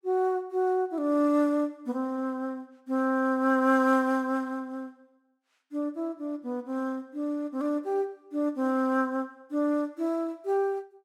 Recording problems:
none

